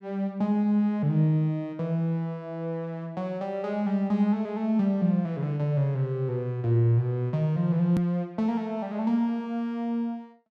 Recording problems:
edit click; at 8 s

